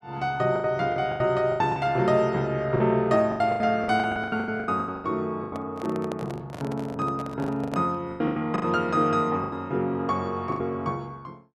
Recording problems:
packet loss; 16% of the sound replaced, filled with the last packet
handling noise; from 5.5 to 8 s; peak -4 dB vs average level

